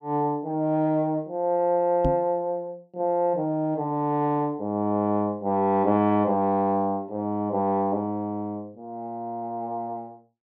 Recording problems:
knock on the microphone; at 2 s; peak +2 dB vs average level

